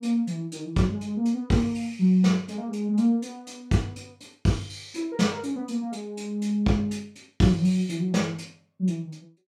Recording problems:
none

